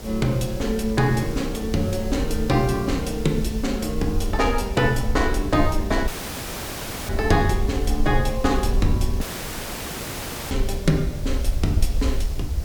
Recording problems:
background hiss; SNR 16 dB
rumble; below 62 Hz, SNR 5 dB
dropout; at 6 s for 1 s and at 9 s for 1.5 s

